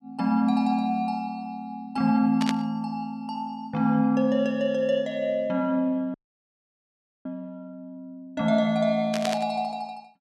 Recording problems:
static burst; at 2.5 s and at 9 s; peak -1 dB vs average level
audio cutting out; at 6 s for 1 s

